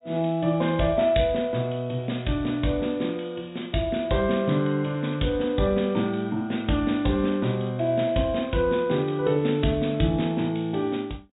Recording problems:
low-pass filter; nothing above 4 kHz

